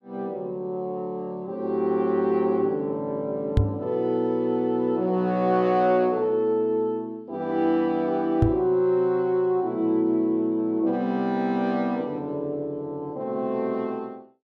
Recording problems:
knock on the microphone; at 3.5 s and at 8.5 s; peak +7 dB vs average level

